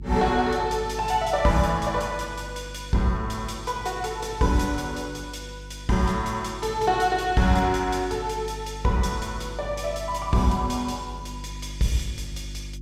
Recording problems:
hum; 50 Hz, harmonics up to 350 Hz, SNR 14 dB

